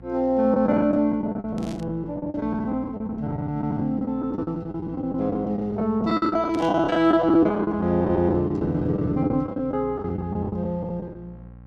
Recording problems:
electrical hum; 60 Hz, harmonics up to 1.1 kHz, SNR 20 dB
lost packets; 18% of the sound replaced, filled with the last packet
burst of static; at 1.5 s and at 6.5 s; peak -13 dB vs average level

